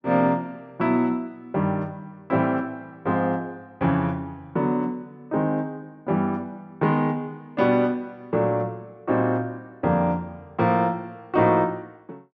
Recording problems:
none

